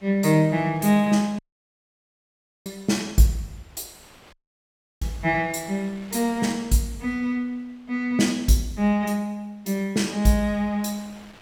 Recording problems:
wind noise; below 3.1 kHz, SNR 27 dB
dropout; at 1.5 s for 1.5 s and at 4.5 s for 0.5 s

